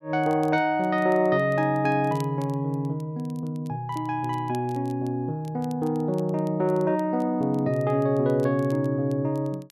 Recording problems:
crackling; vinyl, SNR 29 dB

